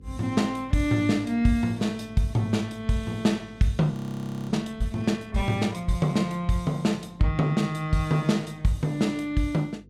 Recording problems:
electrical hum; 50 Hz, harmonics up to 500 Hz, SNR 24 dB
audio freezing; at 4 s for 0.5 s

